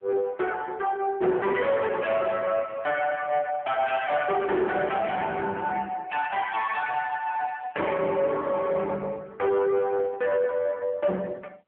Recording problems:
telephone audio; 260 Hz to 3.3 kHz, AMR-NB
distortion; soft clipping, signal-to-distortion ratio 10 dB

